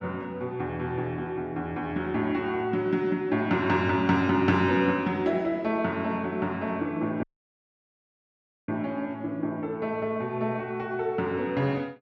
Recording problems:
audio cutting out; at 7 s for 1.5 s

